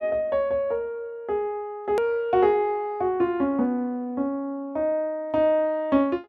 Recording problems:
click at an edit; at 2 s

